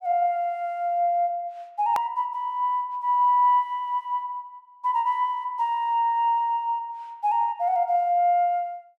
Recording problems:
click at an edit; at 2 s

